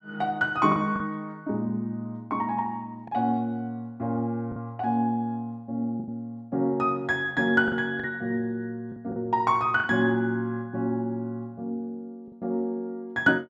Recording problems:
lost packets; 4% of the sound replaced, filled with the last packet

